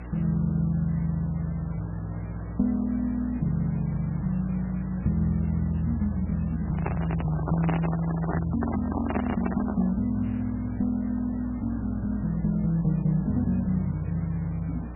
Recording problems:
lossy compression; MP3, log-spectral distance 4 dB, nothing above 11.3 kHz
hum; 60 Hz, harmonics up to 300 Hz, SNR 10 dB
background hiss; SNR 19 dB
microphone handling noise; from 6.5 to 10 s; peak +1 dB vs average level

